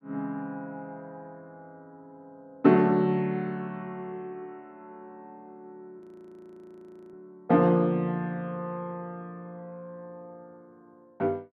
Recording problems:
frozen audio; at 6 s for 1 s

